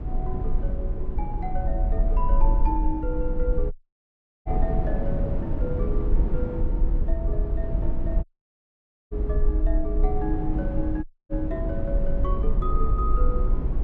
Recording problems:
rumble; below 46 Hz, strongest tone 22 Hz, SNR -5 dB
wind on the microphone; below 240 Hz, SNR -1 dB
dropout; at 3.5 s for 0.5 s, at 8 s for 1 s and at 11 s

